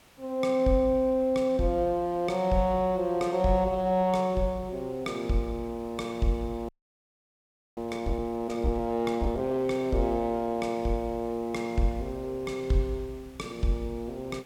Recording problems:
hiss; slope -3 dB per octave, SNR 27 dB
frozen audio; at 6.5 s for 1 s

